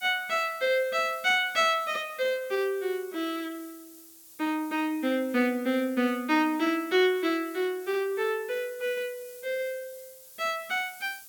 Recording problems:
hiss; SNR 20 dB

